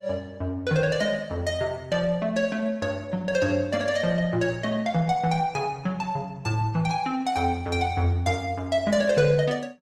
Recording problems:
lossy codec; Opus, log-spectral distance 2 dB, nothing above 18.3 kHz

